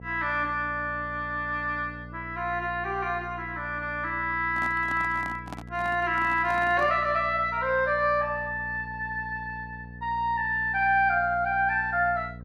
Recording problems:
hum; 60 Hz, harmonics up to 720 Hz, SNR 16 dB
handling noise; from 4.5 to 7 s; peak -8 dB vs average level

